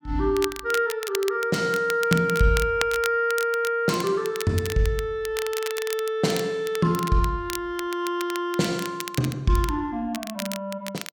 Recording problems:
crackling; vinyl, SNR 11 dB

